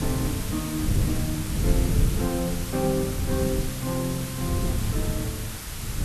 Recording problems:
hiss; slope 0 dB per octave, SNR 5 dB
wind noise; below 140 Hz, SNR 0 dB

